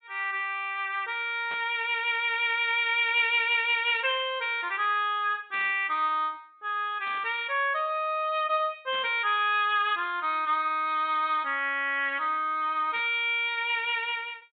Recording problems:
treble missing; nothing above 4 kHz
burst of static; 5 times, first at 1.5 s; peak -12 dB vs average level

